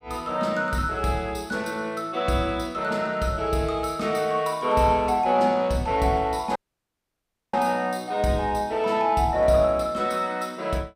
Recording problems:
dropout; at 6.5 s for 1 s

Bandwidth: 15.5 kHz